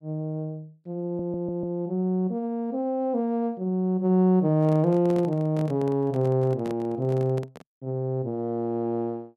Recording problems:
stutter; at 1 s
handling noise; from 4.5 to 7.5 s; peak -9 dB vs average level

